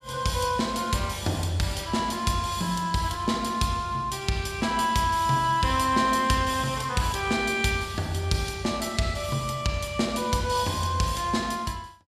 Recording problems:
none

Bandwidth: 14.5 kHz